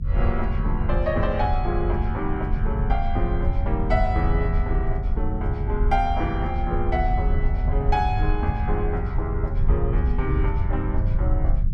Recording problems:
rumble; below 80 Hz, SNR -2 dB

